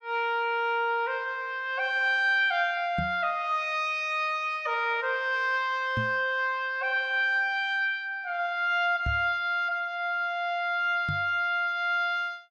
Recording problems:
microphone thump; 4 times, first at 3 s; peak -1 dB vs average level

